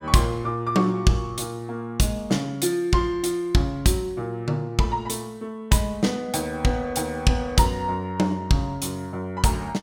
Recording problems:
none

